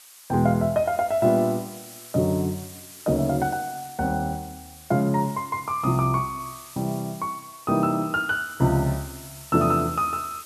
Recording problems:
hiss; SNR 18 dB

